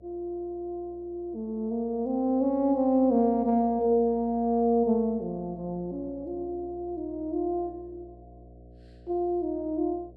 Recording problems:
electrical hum; 60 Hz, harmonics up to 720 Hz, SNR 24 dB

